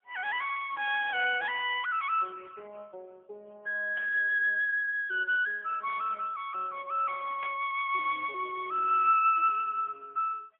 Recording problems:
telephone audio; 320 Hz to 3.3 kHz, AMR-NB, then MP3
burst of static; at 4 s and at 7.5 s; peak -12 dB vs average level

